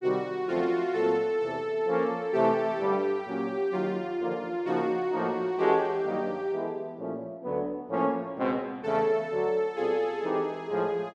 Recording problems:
none

